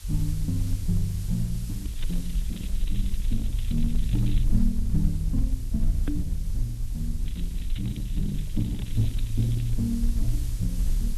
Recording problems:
lossy compression; Opus, log-spectral distance 3 dB, nothing above 13.1 kHz
hiss; SNR 15 dB
low-frequency rumble; below 48 Hz, SNR 1 dB
crackle; from 2 to 4.5 s and from 7 to 9.5 s; loose cable, SNR 19 dB
microphone thump; at 6 s; peak +7 dB vs average level

